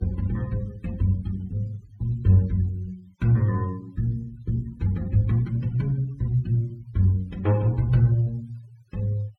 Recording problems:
noise reduction artefacts; signal-to-artefact ratio 27 dB

